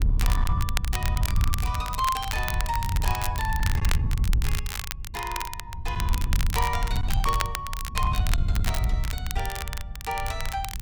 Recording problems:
distortion; hard clipping, signal-to-distortion ratio 12 dB
wind noise; below 88 Hz, SNR -3 dB
crackling; vinyl, SNR 3 dB

